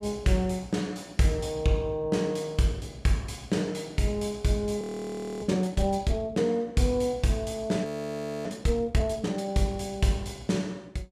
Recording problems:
frozen audio; at 5 s for 0.5 s and at 8 s for 0.5 s

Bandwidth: 14.5 kHz